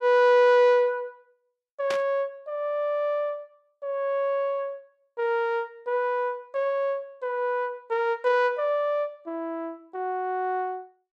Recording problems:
burst of static; at 2 s; peak -3 dB vs average level

